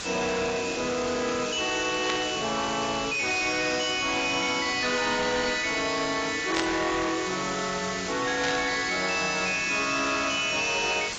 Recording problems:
lossy codec; AAC, log-spectral distance 17 dB, nothing above 7.3 kHz
distorted audio; soft clipping, signal-to-distortion ratio 6 dB
background hiss; slope -1 dB per octave, SNR 8 dB
static burst; at 2 s, at 6.5 s and at 8.5 s; peak +1 dB vs average level

